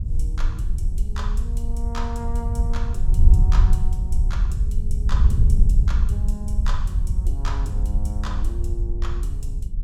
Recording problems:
wind on the microphone; below 66 Hz, SNR -13 dB

